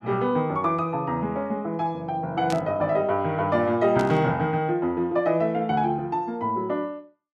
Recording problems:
burst of static; at 2.5 s and at 4 s; peak -7 dB vs average level

